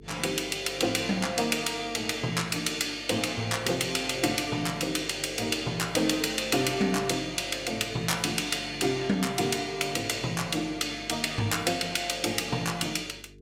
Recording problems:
hum; 50 Hz, harmonics up to 450 Hz, SNR 22 dB

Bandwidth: 16.5 kHz